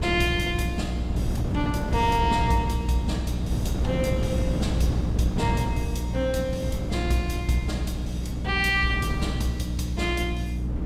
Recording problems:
electrical hum; 60 Hz, harmonics up to 300 Hz, SNR 3 dB
wind on the microphone; below 240 Hz, SNR 4 dB

